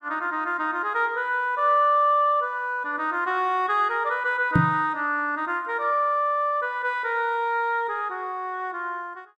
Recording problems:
microphone thump; at 4.5 s; peak +7 dB vs average level

